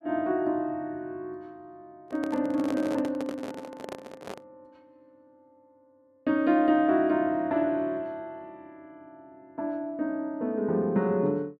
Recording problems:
microphone handling noise; from 2 to 4.5 s; peak -4 dB vs average level

